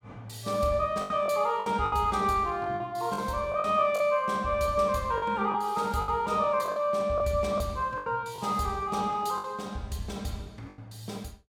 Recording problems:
packet loss; 8% of the sound replaced, filled with the last packet

